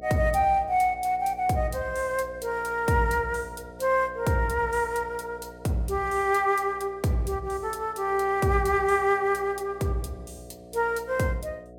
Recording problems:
hum; 60 Hz, harmonics up to 720 Hz, SNR 21 dB

